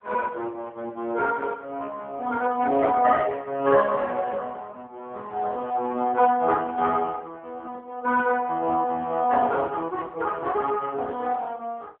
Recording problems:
phone line; 190 Hz to 2.8 kHz, AMR-NB

